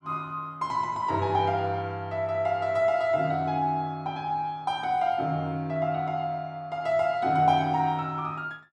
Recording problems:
none

